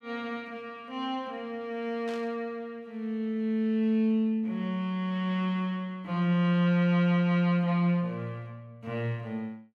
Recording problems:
burst of static; at 2 s; peak -13 dB vs average level

